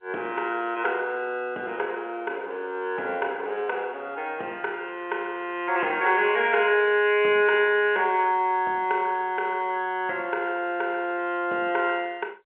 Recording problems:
telephone audio; 300 Hz to 3.2 kHz, G.711

